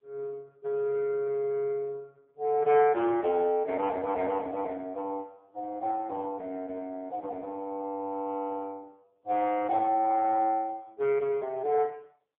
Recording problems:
telephone audio; 170 Hz to 2.9 kHz, AMR-NB

